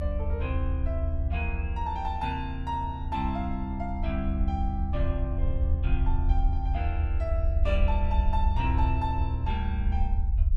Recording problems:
low-frequency rumble; below 76 Hz, SNR -4 dB

